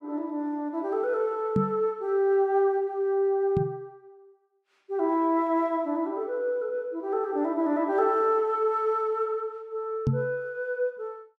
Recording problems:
microphone bump; at 1.5 s, at 3.5 s and at 10 s; peak +5 dB vs average level

